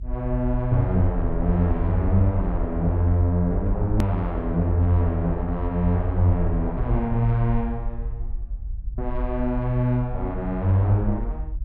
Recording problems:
low-frequency rumble; below 52 Hz, SNR 7 dB
edit click; at 4 s

